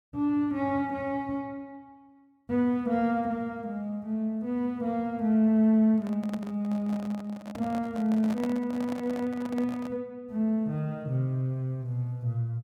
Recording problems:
microphone handling noise; from 6 to 10 s; peak -4 dB vs average level

